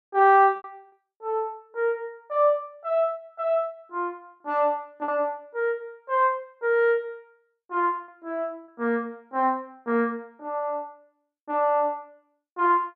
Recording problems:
lost packets; 1.8% of the sound replaced, filled with repeated pitch periods

